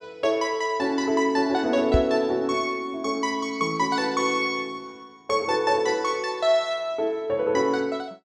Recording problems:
microphone thump; at 2 s; peak +5 dB vs average level

